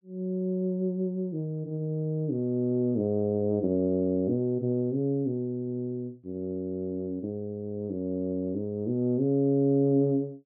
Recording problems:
none

